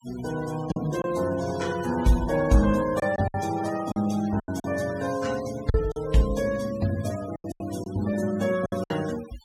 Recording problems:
noise reduction artefacts; signal-to-artefact ratio 16 dB
lost packets; 7% of the sound replaced, filled with silence

